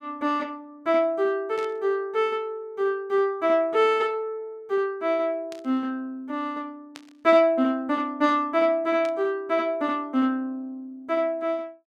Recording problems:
burst of static; 4 times, first at 1.5 s; peak -12 dB vs average level

